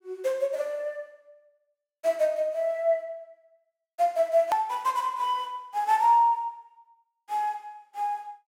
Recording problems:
edit click; at 4.5 s

